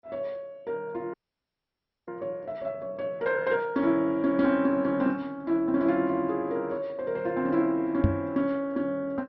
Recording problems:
lossy codec; MP2, log-spectral distance 2 dB, nothing above 5.5 kHz
audio freezing; at 1 s for 1 s
microphone bump; at 8 s; peak +8 dB vs average level

